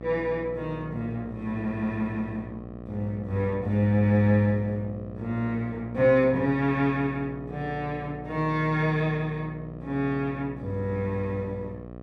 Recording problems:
hum; 60 Hz, harmonics up to 1.4 kHz, SNR 13 dB

